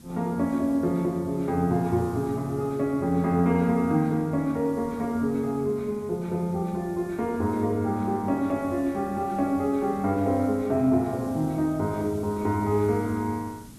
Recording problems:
hiss; SNR 21 dB

